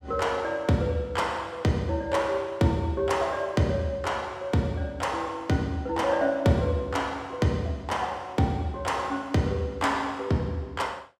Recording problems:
none

